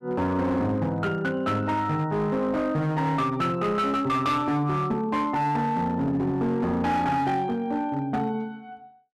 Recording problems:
distortion; hard clipping, signal-to-distortion ratio 11 dB

